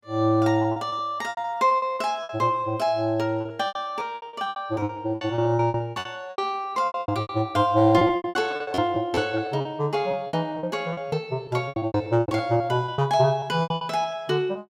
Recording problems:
lost packets; 19% of the sound replaced, filled with repeated pitch periods

